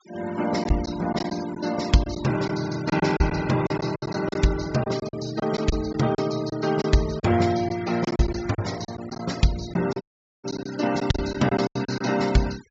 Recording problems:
treble missing; nothing above 8 kHz
denoising artefacts; signal-to-artefact ratio 15 dB
packet loss; 9% of the sound replaced, filled with silence
audio cutting out; at 10 s

